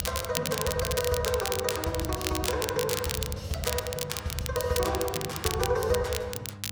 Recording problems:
hum; 50 Hz, harmonics up to 1 kHz, SNR 15 dB
crackling; vinyl, SNR 4 dB

